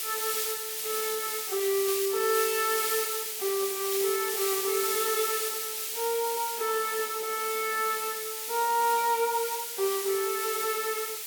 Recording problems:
background hiss; SNR 1 dB

